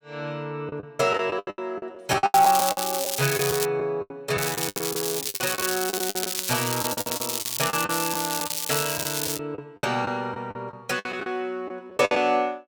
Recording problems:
lost packets; 14% of the sound replaced, filled with the last packet
crackling; from 2.5 to 3.5 s and from 4.5 to 9.5 s; loose cable, SNR 1 dB

